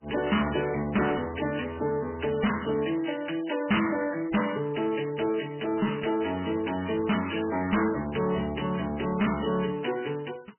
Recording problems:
codec artefacts; MP3, log-spectral distance 10 dB, nothing above 3 kHz
distortion; soft clipping, signal-to-distortion ratio 7 dB

